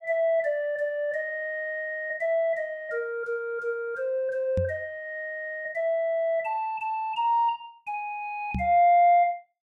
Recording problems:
knock on the microphone; at 4.5 s and at 8.5 s; peak 0 dB vs average level

